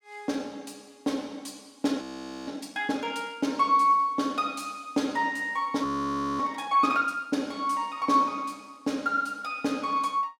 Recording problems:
frozen audio; at 2 s and at 6 s for 0.5 s

